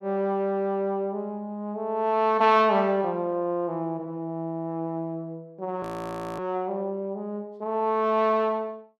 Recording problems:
frozen audio; at 6 s for 0.5 s

